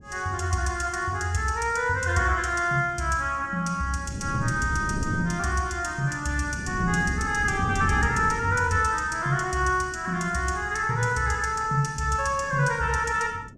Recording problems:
wind on the microphone; below 230 Hz, SNR 11 dB

